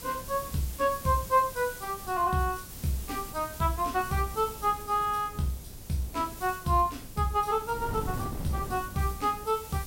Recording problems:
hiss; slope 0 dB per octave, SNR 14 dB
wind noise; below 250 Hz, SNR 14 dB

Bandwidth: 16 kHz